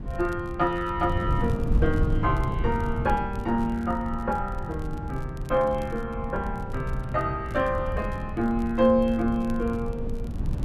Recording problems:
wind noise; below 130 Hz, SNR 5 dB
crackling; vinyl, SNR 29 dB

